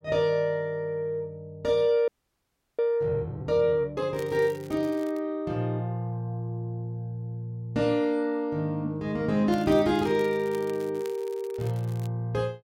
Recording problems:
audio freezing; at 2 s for 0.5 s
crackling; from 4 to 5 s and from 9.5 to 12 s; loose cable, SNR 23 dB

